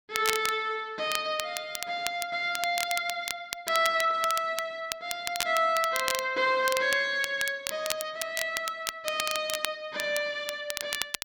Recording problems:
crackling; vinyl, SNR 6 dB

